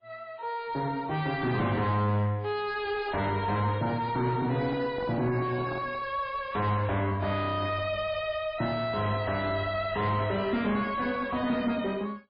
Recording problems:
lossy codec; MP3, log-spectral distance 3 dB, nothing above 4.1 kHz
distorted audio; soft clipping, signal-to-distortion ratio 8 dB
microphone handling noise; from 4.5 to 6 s; peak -5 dB vs average level

